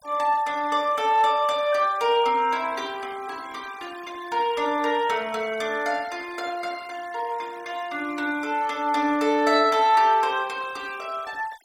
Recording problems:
noise reduction artefacts; signal-to-artefact ratio 22 dB

